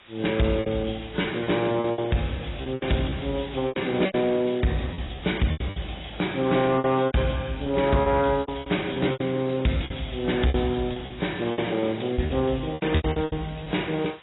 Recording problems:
codec artefacts; AAC, log-spectral distance 11 dB, nothing above 3.8 kHz
distorted audio; soft clipping, signal-to-distortion ratio 12 dB
hiss; SNR 21 dB
lost packets; 14% of the sound replaced, filled with repeated pitch periods

